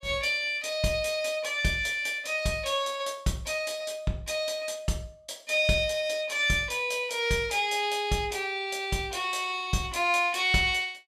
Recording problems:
none

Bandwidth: 14.5 kHz